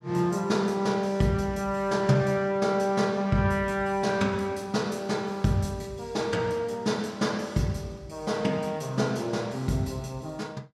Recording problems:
none

